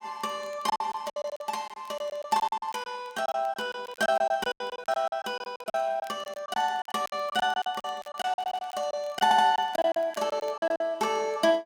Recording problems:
crackle; vinyl, SNR 28 dB
lost packets; 17% of the sound replaced, filled with silence
audio stuttering; at 8.5 s and at 9 s

